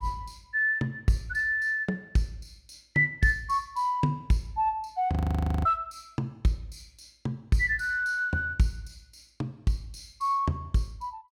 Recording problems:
audio freezing; at 5 s for 0.5 s

